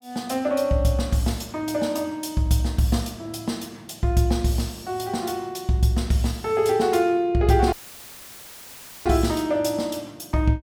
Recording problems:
dropout; at 7.5 s for 1.5 s; filled with static

